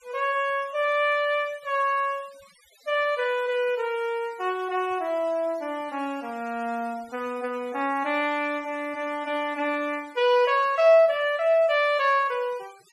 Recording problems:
denoising artefacts; signal-to-artefact ratio 26 dB

